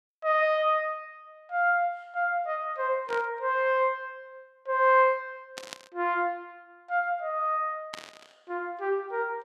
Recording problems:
static burst; at 3 s, at 5.5 s and at 8 s; peak -6 dB vs average level

